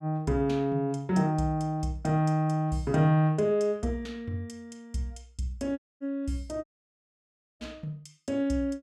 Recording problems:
audio cutting out; at 6 s and at 6.5 s for 1 s

